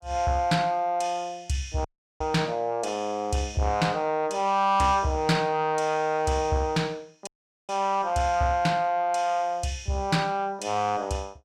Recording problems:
distorted audio; soft clipping, signal-to-distortion ratio 11 dB
audio cutting out; at 2 s and at 7.5 s

